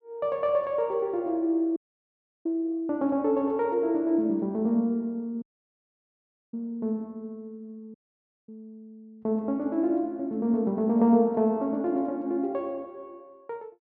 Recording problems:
dropout; at 2 s for 0.5 s, at 5.5 s for 1 s and at 8 s for 0.5 s

